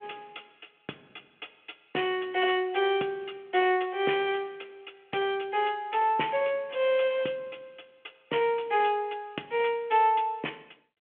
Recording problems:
phone line; 240 Hz to 3.3 kHz, G.726

